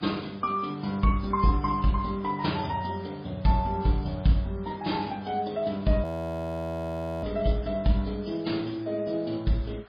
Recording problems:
lossy compression; MP3, log-spectral distance 6 dB, nothing above 15.1 kHz
hiss; SNR 26 dB
frozen audio; at 6 s for 1 s

